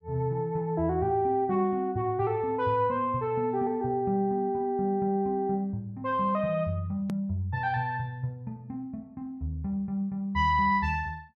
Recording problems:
click at an edit; at 7 s

